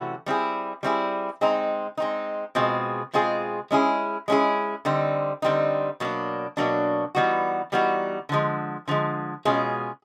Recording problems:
none

